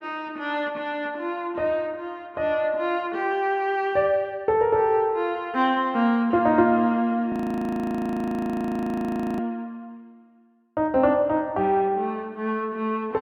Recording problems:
frozen audio; at 7.5 s for 2 s

